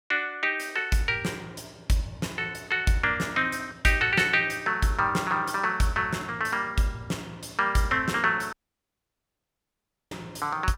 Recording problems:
dropout; at 8.5 s for 1.5 s

